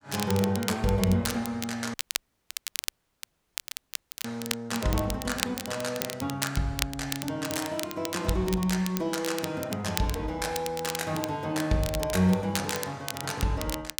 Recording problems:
crackling; vinyl, SNR 7 dB
audio cutting out; at 2 s for 2.5 s

